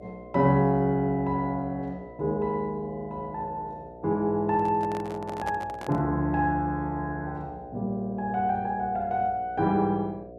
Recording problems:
electrical hum; 60 Hz, harmonics up to 720 Hz, SNR 17 dB
handling noise; from 4.5 to 6 s; peak -4 dB vs average level

